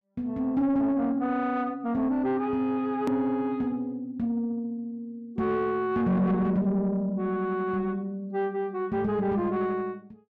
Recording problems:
distortion; soft clipping, signal-to-distortion ratio 12 dB
click at an edit; at 3 s

